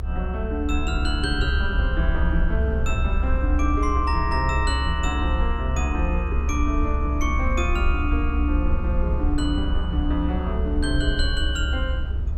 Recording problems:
rumble; below 68 Hz, SNR -2 dB

